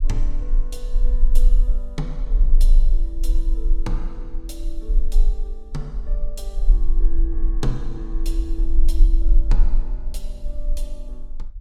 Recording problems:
rumble; below 34 Hz, strongest tone 26 Hz, SNR -13 dB

